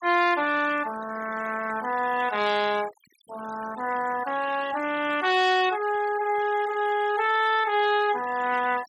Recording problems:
denoising artefacts; signal-to-artefact ratio 15 dB

